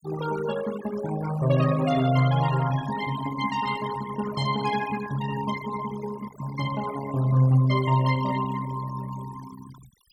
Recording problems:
noise reduction artefacts; signal-to-artefact ratio 14 dB

